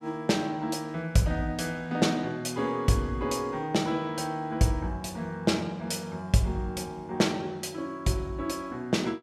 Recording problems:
none

